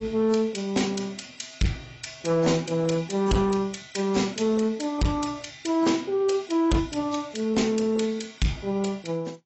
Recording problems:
lossy compression; AAC, log-spectral distance 6 dB, nothing above 7.8 kHz
distorted audio; soft clipping, signal-to-distortion ratio 10 dB

